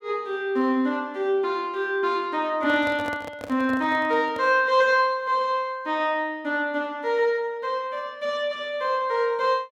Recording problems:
microphone handling noise; from 2.5 to 4.5 s; peak -8 dB vs average level

